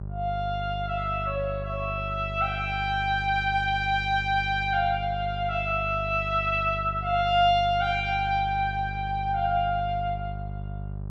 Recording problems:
hum; 50 Hz, harmonics up to 600 Hz, SNR 9 dB

